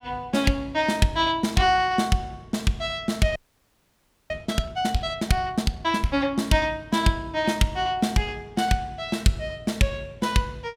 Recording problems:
audio freezing; at 3.5 s for 1 s

